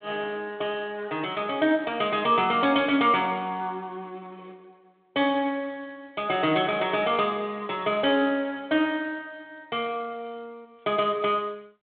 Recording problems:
telephone audio; 150 Hz to 3.9 kHz, G.726

